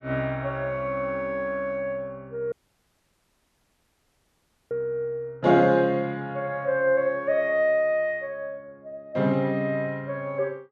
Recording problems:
dropout; at 2.5 s for 2 s

